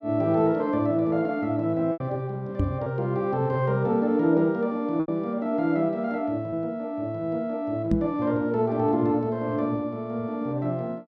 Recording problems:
lost packets; 1.8% of the sound replaced, filled with repeated pitch periods
knock on the microphone; at 2.5 s and at 8 s; peak +4 dB vs average level

